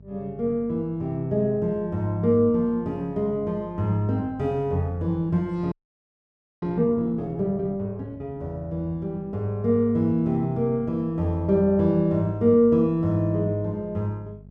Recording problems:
hum; 50 Hz, harmonics up to 450 Hz, SNR 22 dB
frozen audio; at 5.5 s for 1 s

